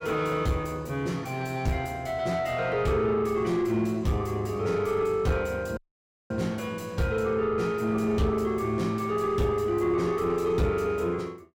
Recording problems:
distorted audio; soft clipping, signal-to-distortion ratio 9 dB
audio cutting out; at 6 s for 0.5 s

